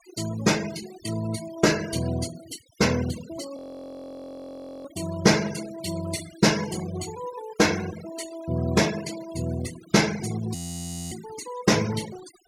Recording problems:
denoising artefacts; signal-to-artefact ratio 14 dB
frozen audio; at 3.5 s for 1.5 s and at 11 s for 0.5 s

